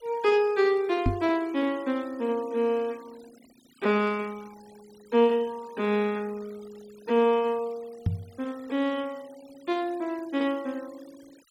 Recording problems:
noise reduction artefacts; signal-to-artefact ratio 26 dB
knock on the microphone; at 1 s and at 8 s; peak +5 dB vs average level

